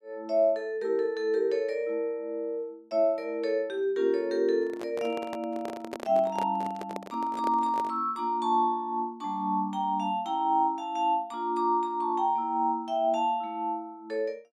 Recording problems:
microphone handling noise; from 4.5 to 8 s; peak -4 dB vs average level

